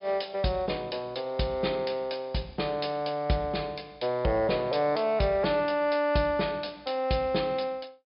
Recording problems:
treble cut off; nothing above 5.5 kHz

